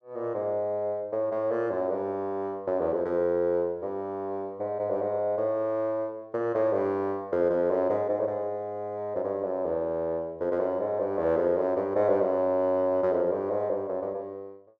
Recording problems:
none

